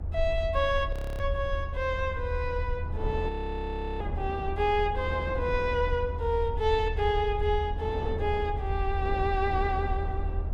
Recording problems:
low-frequency rumble; below 78 Hz, SNR 4 dB
wind noise; below 580 Hz, SNR 13 dB
frozen audio; at 1 s and at 3.5 s for 0.5 s

